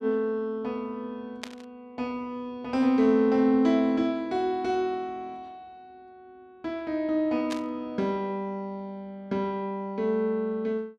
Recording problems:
static burst; at 1.5 s and at 7.5 s; peak -4 dB vs average level

